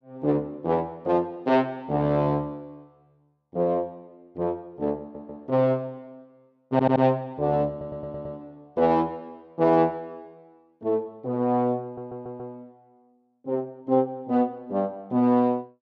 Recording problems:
audio stuttering; 4 times, first at 5 s

